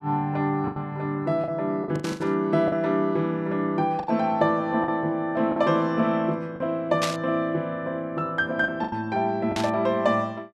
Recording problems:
packet loss; 7% of the sound replaced, filled with the last packet
burst of static; at 2 s, at 7 s and at 9.5 s; peak +2 dB vs average level

